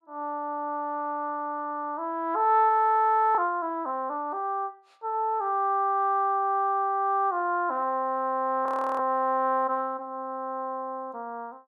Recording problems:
frozen audio; at 2.5 s for 0.5 s and at 8.5 s

